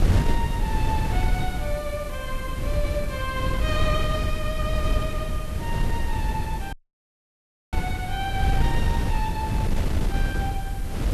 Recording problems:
lossy codec; Vorbis, log-spectral distance 2 dB
hiss; slope 0 dB per octave, SNR 15 dB
wind on the microphone; below 110 Hz, SNR -4 dB
audio cutting out; at 6.5 s for 1 s

